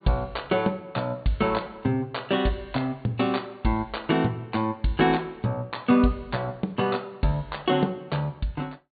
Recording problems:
treble missing; nothing above 4.6 kHz

